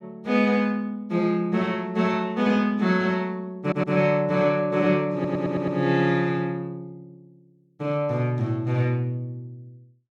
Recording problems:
stutter; at 3.5 s and at 5 s

